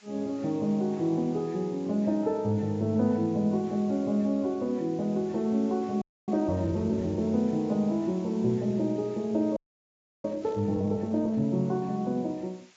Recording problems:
lossy codec; AAC, log-spectral distance 3 dB
background hiss; SNR 27 dB
frozen audio; at 6 s and at 9.5 s for 0.5 s
burst of static; at 10 s; peak -23 dB vs average level

